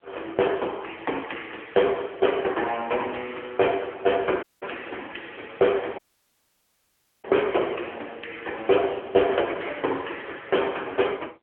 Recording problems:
phone line; 300 Hz to 3.3 kHz, AMR-NB
audio cutting out; at 4.5 s and at 6 s for 1.5 s

